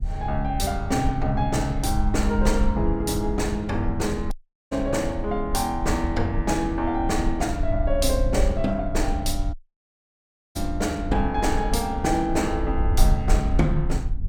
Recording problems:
low-frequency rumble; below 70 Hz, SNR 8 dB
wind noise; below 58 Hz, SNR 5 dB
audio cutting out; at 4.5 s and at 9.5 s for 1 s

